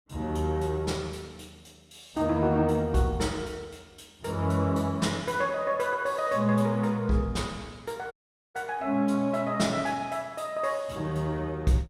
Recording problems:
dropout; at 8 s

